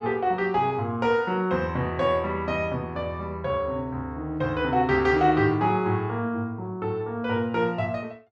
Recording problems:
none

